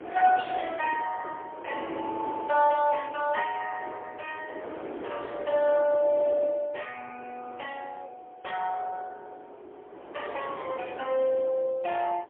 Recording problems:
telephone audio; 280 Hz to 2.8 kHz, AMR-NB, then MP3
wind noise; below 770 Hz, SNR 13 dB

